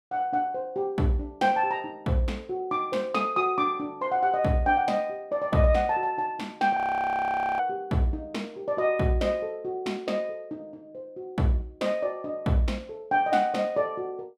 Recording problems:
frozen audio; at 7 s for 1 s

